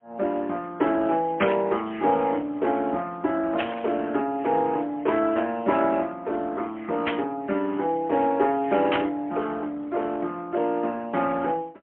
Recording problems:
telephone audio; 240 Hz to 3.3 kHz, AMR-NB, then MP3
burst of static; 4 times, first at 1.5 s; peak +4 dB vs average level

